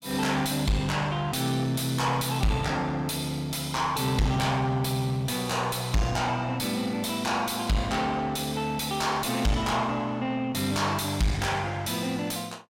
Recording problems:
distortion; soft clipping, signal-to-distortion ratio 5 dB

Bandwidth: 16.5 kHz